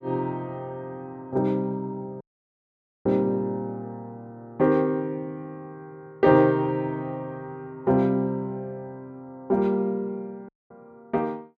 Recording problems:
dropout; at 2 s for 1 s and at 10 s

